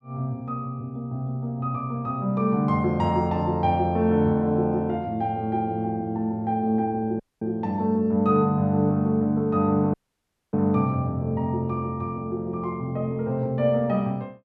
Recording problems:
dropout; at 7 s and at 10 s for 0.5 s

